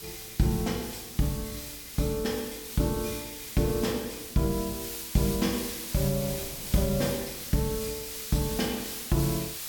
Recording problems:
hiss; slope +3 dB per octave, SNR 6 dB
wind noise; below 470 Hz, SNR 23 dB

